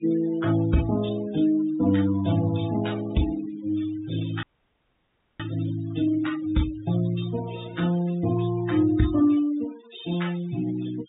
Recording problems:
treble cut off; nothing above 4 kHz
noise reduction artefacts; signal-to-artefact ratio 16 dB
dropout; at 4.5 s for 1 s

